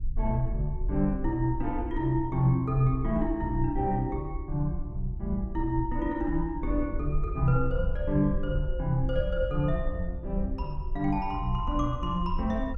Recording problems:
rumble; below 60 Hz, SNR 6 dB

